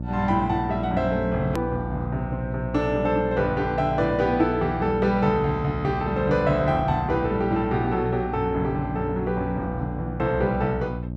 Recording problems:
hum; 60 Hz, harmonics up to 600 Hz, SNR 7 dB
click at an edit; at 1.5 s

